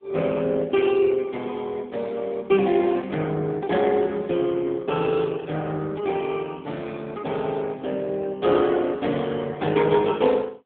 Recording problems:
telephone audio; 220 Hz to 3.5 kHz, AMR-NB

